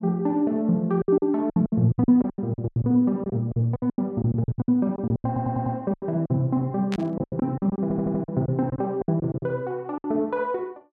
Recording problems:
lost packets; 17% of the sound replaced, filled with silence
stutter; at 5.5 s and at 8 s
static burst; at 7 s; peak -6 dB vs average level

